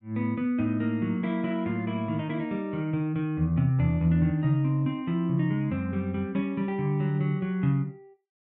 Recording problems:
none

